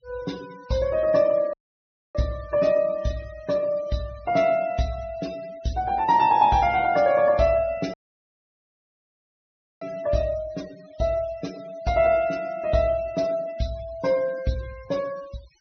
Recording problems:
treble missing; nothing above 6.3 kHz
noise reduction artefacts; signal-to-artefact ratio 21 dB
dropout; at 1.5 s for 0.5 s and at 8 s for 2 s

